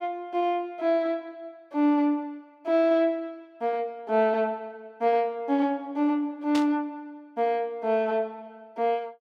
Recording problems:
burst of static; at 6.5 s; peak -4 dB vs average level

